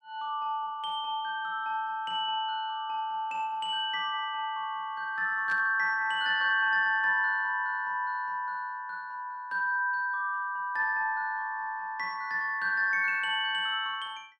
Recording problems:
burst of static; at 5.5 s; peak -13 dB vs average level

